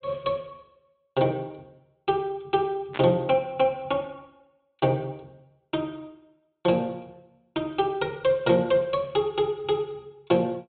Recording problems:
treble cut off; nothing above 4 kHz
static burst; at 3 s; peak -5 dB vs average level

